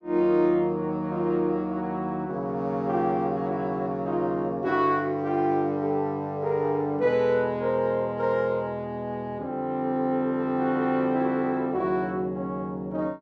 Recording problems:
none

